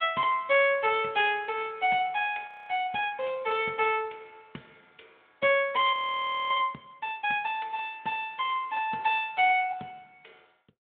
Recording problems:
phone line; 220 Hz to 3.6 kHz, Speex
audio freezing; at 2.5 s and at 6 s for 0.5 s

